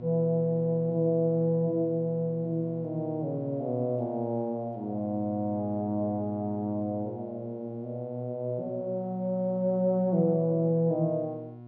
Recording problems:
mains hum; 60 Hz, harmonics up to 1.1 kHz, SNR 16 dB

